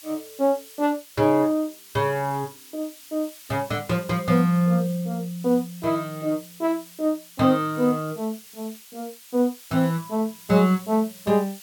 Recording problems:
background hiss; slope +4 dB per octave, SNR 19 dB

